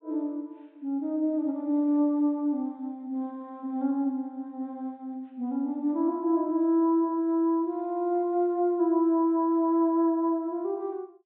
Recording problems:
treble missing; nothing above 4 kHz

